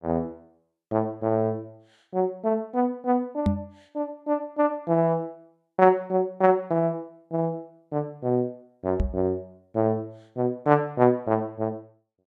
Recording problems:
knock on the microphone; at 3.5 s and at 9 s; peak +6 dB vs average level

